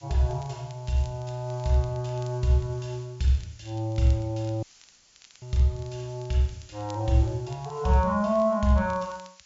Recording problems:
treble missing; nothing above 7.4 kHz
background hiss; slope +4 dB per octave, SNR 27 dB
crackling; vinyl, SNR 29 dB
dropout; at 4.5 s for 1 s

